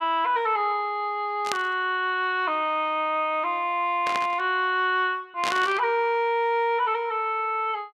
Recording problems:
burst of static; at 1.5 s, at 4 s and at 5.5 s; peak 0 dB vs average level

